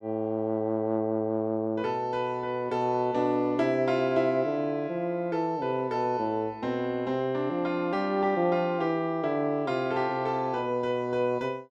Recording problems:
none

